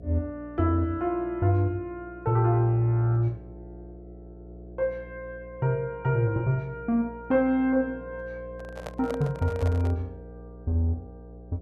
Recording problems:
mains hum; 60 Hz, harmonics up to 720 Hz, SNR 19 dB
handling noise; from 8.5 to 10 s; peak -6 dB vs average level

